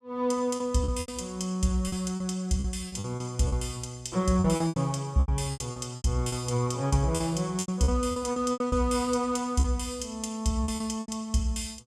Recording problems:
packet loss; 13% of the sound replaced, filled with repeated pitch periods

